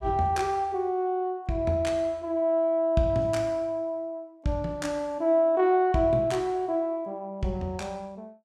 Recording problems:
none

